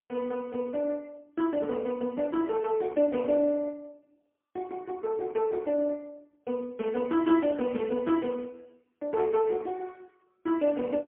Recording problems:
phone line; 110 Hz to 2.2 kHz, AMR-NB, then MP3

